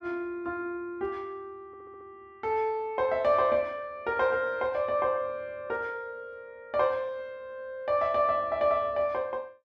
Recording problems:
audio stuttering; at 1.5 s

